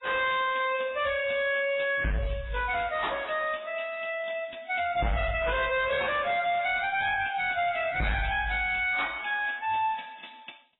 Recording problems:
lossy compression; MP3, then AAC, log-spectral distance 7 dB, nothing above 3.8 kHz
distorted audio; hard clipping, uneven, signal-to-distortion ratio 6 dB

